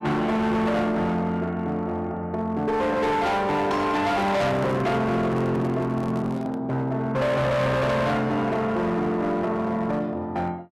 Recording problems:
distorted audio; hard clipping, signal-to-distortion ratio 7 dB
handling noise; from 4 to 6.5 s; peak -6 dB vs average level

